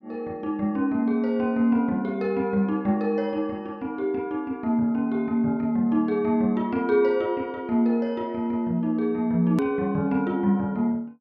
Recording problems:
click at an edit; at 9.5 s

